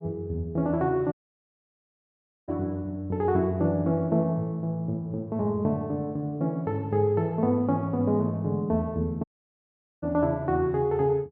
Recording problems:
audio cutting out; at 1 s for 1.5 s and at 9 s for 1 s

